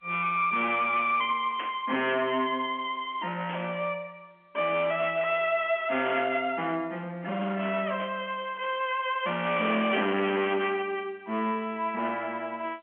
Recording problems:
phone line; 220 Hz to 3.4 kHz, G.711
distorted audio; hard clipping, signal-to-distortion ratio 9 dB
burst of static; 5 times, first at 1.5 s; peak -5 dB vs average level

